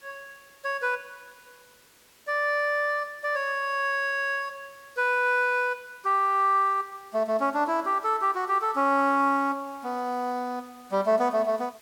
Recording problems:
background hiss; slope -1 dB per octave, SNR 29 dB

